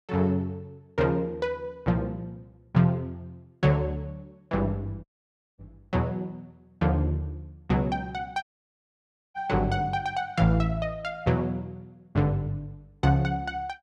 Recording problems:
audio cutting out; at 5 s for 0.5 s and at 8.5 s for 1 s

